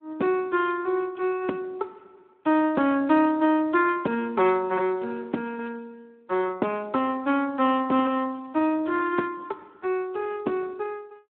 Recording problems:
telephone audio; 220 Hz to 3.4 kHz, Speex

